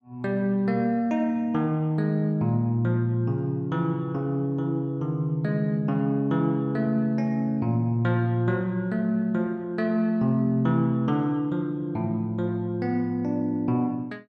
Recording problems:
none

